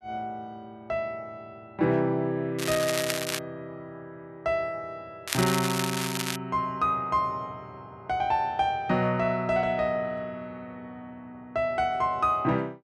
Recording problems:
crackle; at 2.5 s and from 5.5 to 6.5 s; loose cable, SNR 3 dB

